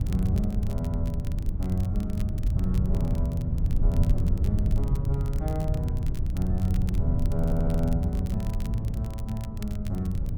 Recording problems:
wind noise; below 100 Hz, SNR -3 dB
crackling; vinyl, SNR 18 dB
stutter; at 7.5 s

